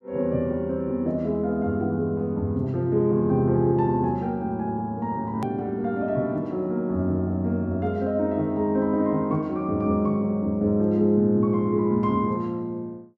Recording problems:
edit click; at 5.5 s

